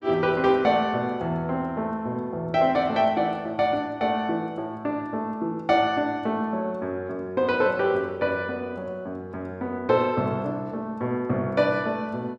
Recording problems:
none

